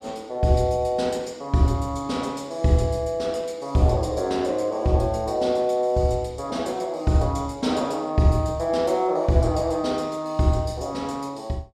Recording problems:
none

